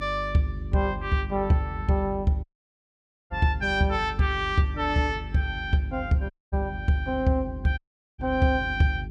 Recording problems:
hum; 50 Hz, harmonics up to 400 Hz, SNR 12 dB
audio cutting out; at 2.5 s for 1 s, at 6.5 s and at 8 s

